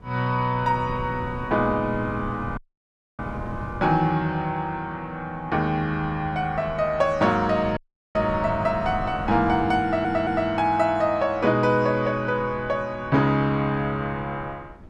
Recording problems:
wind on the microphone; below 240 Hz, SNR 16 dB
dropout; at 2.5 s for 0.5 s and at 8 s
audio stuttering; at 10 s

